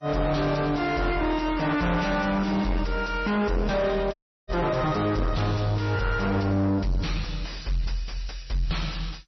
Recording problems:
codec artefacts; MP3, then MP2, log-spectral distance 4 dB, nothing above 5.8 kHz
distorted audio; soft clipping, signal-to-distortion ratio 6 dB
audio cutting out; at 4 s

